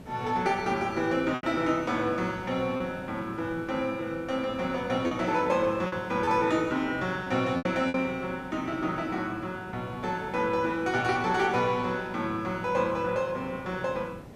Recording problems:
hiss; SNR 16 dB
lost packets; 3% of the sound replaced, filled with repeated pitch periods

